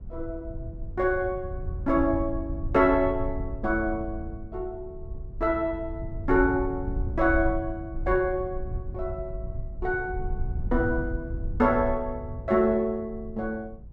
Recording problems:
low-frequency rumble; below 84 Hz, SNR 9 dB

